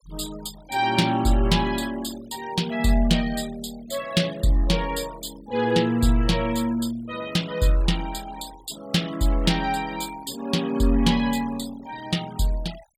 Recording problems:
denoising artefacts; signal-to-artefact ratio 19 dB

